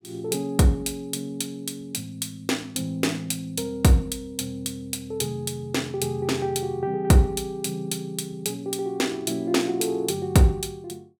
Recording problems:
none

